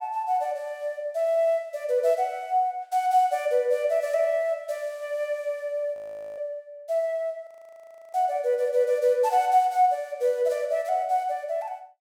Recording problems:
frozen audio; at 6 s and at 7.5 s for 0.5 s

